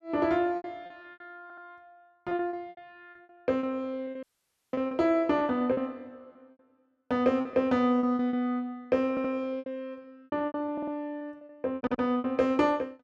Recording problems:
packet loss; 13% of the sound replaced, filled with repeated pitch periods
audio stuttering; 4 times, first at 1.5 s
audio cutting out; at 4 s for 0.5 s

